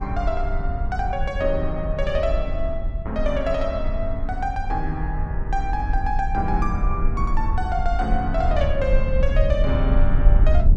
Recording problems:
low-frequency rumble; below 62 Hz, SNR -1 dB

